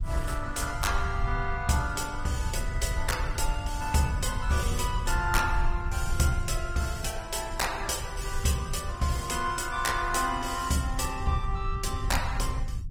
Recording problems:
lossy compression; Opus, then Opus, log-spectral distance 4 dB
low-frequency rumble; below 78 Hz, SNR 5 dB

